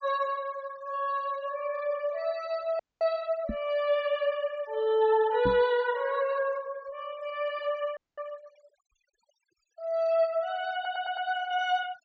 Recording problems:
low-pass filter; nothing above 8 kHz
noise reduction artefacts; signal-to-artefact ratio 22 dB
audio freezing; at 3 s and at 8 s
knock on the microphone; at 3.5 s and at 5.5 s; peak 0 dB vs average level
stutter; at 11 s

